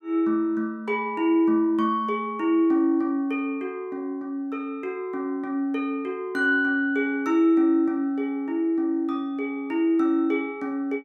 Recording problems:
none

